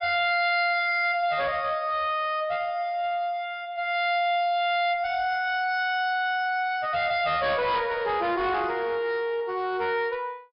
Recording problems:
treble missing; nothing above 5.5 kHz
distortion; hard clipping, uneven, signal-to-distortion ratio 10 dB

